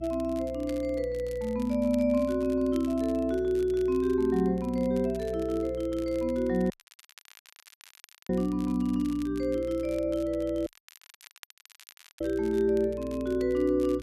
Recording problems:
mains hum; 60 Hz, harmonics up to 300 Hz, SNR 17 dB
crackle; vinyl, SNR 24 dB
dropout; at 6.5 s for 1.5 s and at 11 s for 1.5 s

